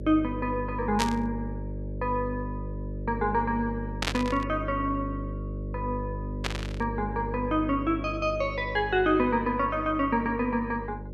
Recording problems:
electrical hum; 50 Hz, harmonics up to 600 Hz, SNR 8 dB
burst of static; at 1 s, at 4 s and at 6.5 s; peak +4 dB vs average level

